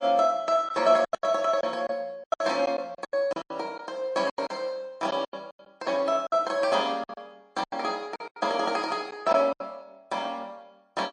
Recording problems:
codec artefacts; MP3, log-spectral distance 2 dB, nothing above 9.5 kHz
packet loss; 13% of the sound replaced, filled with silence

